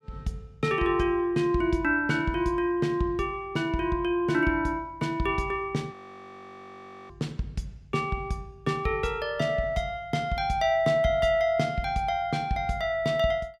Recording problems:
audio freezing; at 6 s for 1 s

